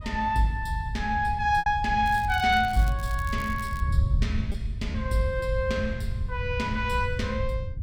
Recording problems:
wind on the microphone; below 100 Hz, SNR 5 dB
lost packets; 2% of the sound replaced, filled with repeated pitch periods
crackle; from 2 to 4 s; loose cable, SNR 21 dB

